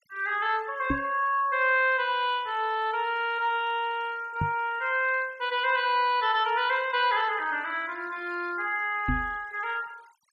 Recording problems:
noise reduction artefacts; signal-to-artefact ratio 26 dB
knock on the microphone; at 1 s, at 4.5 s and at 9 s; peak +2 dB vs average level

